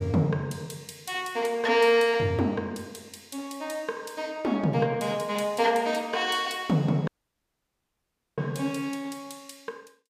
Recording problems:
dropout; at 7 s for 1.5 s

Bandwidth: 15 kHz